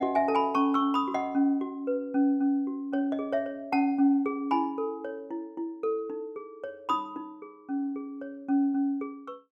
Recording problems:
none

